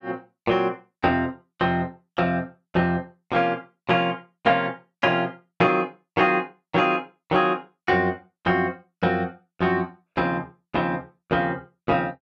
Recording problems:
none

